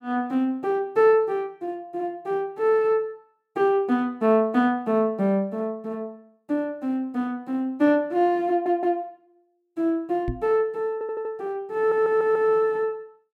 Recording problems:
stutter; at 8.5 s, at 11 s and at 12 s
knock on the microphone; at 10 s; peak -2 dB vs average level

